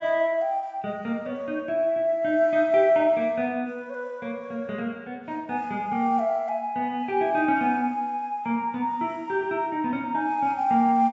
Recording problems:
treble cut off; nothing above 8 kHz

